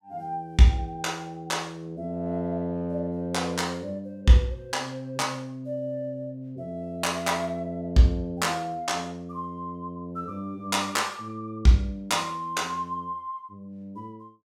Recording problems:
none

